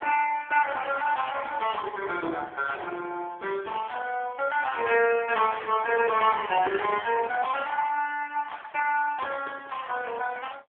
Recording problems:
phone line; 300 Hz to 3.3 kHz, AMR-NB

